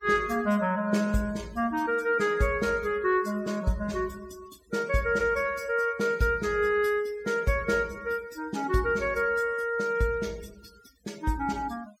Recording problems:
noise reduction artefacts; signal-to-artefact ratio 23 dB

